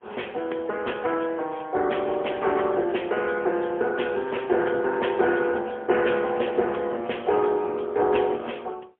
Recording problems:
telephone audio; 300 Hz to 3.4 kHz, AMR-NB, then MP3

